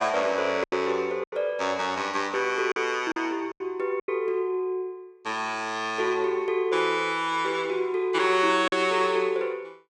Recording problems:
packet loss; 5% of the sound replaced, filled with silence

